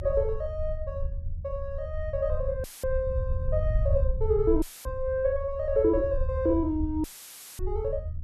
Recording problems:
low-frequency rumble; below 78 Hz, SNR 4 dB
audio cutting out; at 2.5 s, at 4.5 s and at 7 s for 0.5 s; filled with static

